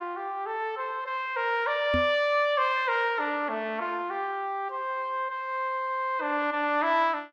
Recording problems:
microphone bump; at 2 s; peak +1 dB vs average level

